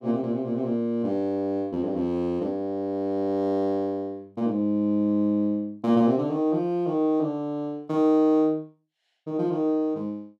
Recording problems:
none

